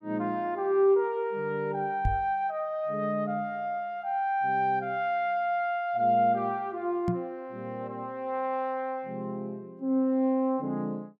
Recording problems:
microphone thump; at 2 s and at 7 s; peak +3 dB vs average level

